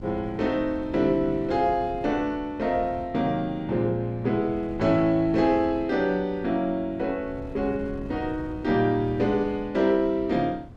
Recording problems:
wind noise; below 220 Hz, SNR 17 dB

